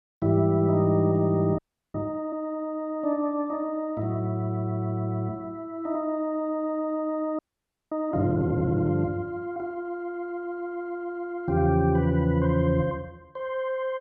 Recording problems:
audio freezing; at 1.5 s and at 7.5 s for 0.5 s

